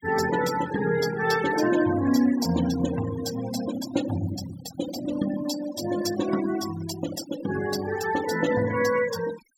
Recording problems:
denoising artefacts; signal-to-artefact ratio 11 dB

